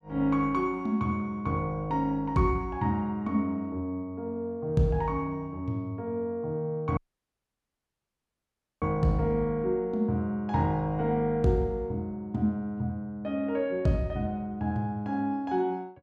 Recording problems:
audio cutting out; at 7 s for 2 s

